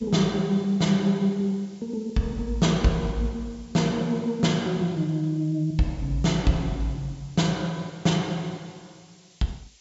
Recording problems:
treble cut off; nothing above 8 kHz
background hiss; SNR 29 dB

